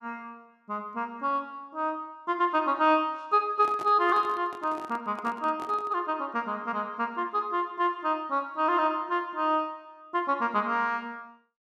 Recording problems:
handling noise; from 3.5 to 6 s; peak -8 dB vs average level

